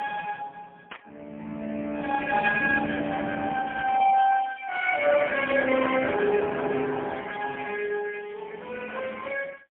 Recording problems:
phone line; 240 Hz to 2.5 kHz, AMR-NB, then MP3
static burst; at 1 s, at 2.5 s and at 5.5 s; peak -8 dB vs average level

